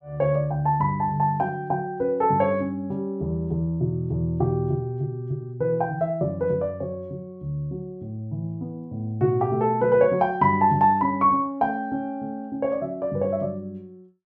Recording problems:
none

